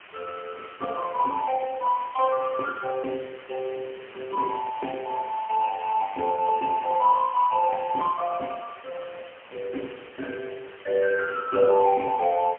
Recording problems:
phone line; 220 Hz to 2.7 kHz, AMR-NB, then MP3
hiss; SNR 20 dB
crackle; from 2 to 4 s and from 7.5 to 12 s; loose cable, SNR 30 dB

